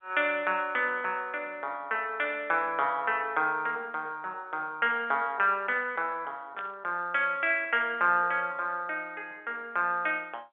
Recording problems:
telephone audio; 260 Hz to 3.6 kHz, G.711
static burst; at 6.5 s; peak -11 dB vs average level

